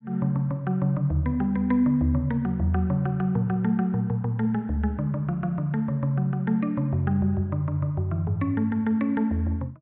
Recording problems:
treble missing; nothing above 4 kHz

